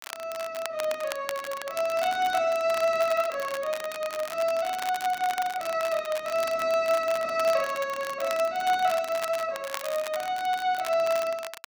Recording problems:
crackle; vinyl, SNR 12 dB

